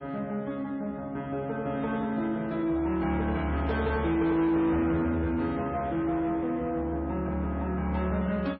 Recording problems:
lossy codec; MP3, log-spectral distance 2 dB
distortion; soft clipping, signal-to-distortion ratio 11 dB

